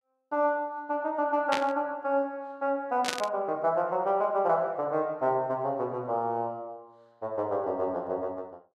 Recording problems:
burst of static; at 1.5 s and at 3 s; peak +4 dB vs average level

